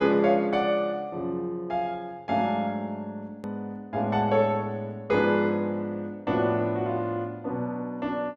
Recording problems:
click at an edit; at 3.5 s

